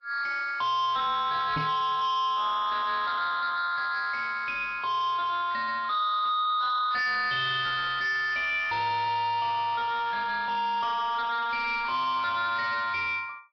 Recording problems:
treble missing; nothing above 5.3 kHz
lossy codec; Vorbis, log-spectral distance 3 dB
distortion; soft clipping, signal-to-distortion ratio 7 dB
microphone thump; at 1.5 s; peak +1 dB vs average level

